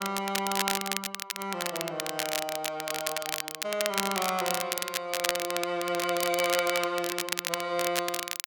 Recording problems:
crackling; vinyl, SNR 1 dB

